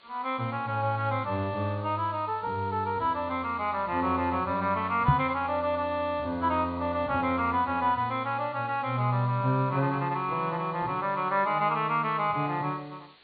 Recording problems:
treble missing; nothing above 4.5 kHz
background hiss; SNR 27 dB
microphone bump; at 5 s; peak +8 dB vs average level

